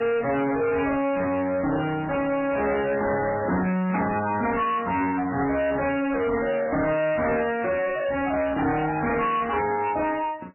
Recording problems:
lossy compression; MP3, then AAC, log-spectral distance 5 dB, nothing above 2.9 kHz
distorted audio; soft clipping, signal-to-distortion ratio 7 dB

